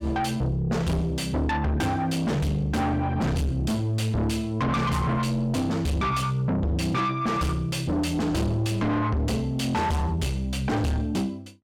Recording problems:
distortion; soft clipping, signal-to-distortion ratio 5 dB

